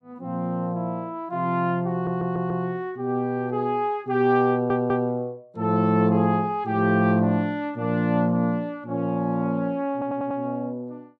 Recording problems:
stutter; at 2 s, at 4.5 s and at 10 s

